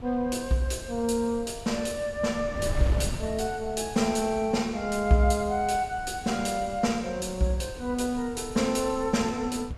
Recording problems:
wind on the microphone; below 180 Hz, SNR 13 dB

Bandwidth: 15 kHz